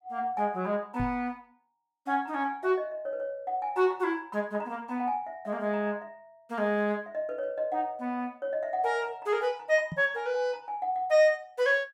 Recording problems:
knock on the microphone; at 1 s and at 10 s; peak -2 dB vs average level

